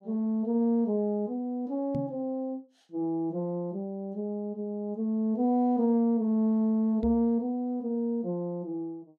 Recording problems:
knock on the microphone; at 2 s and at 7 s; peak -1 dB vs average level

